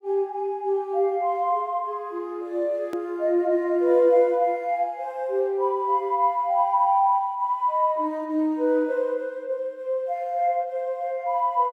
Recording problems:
click at an edit; at 3 s

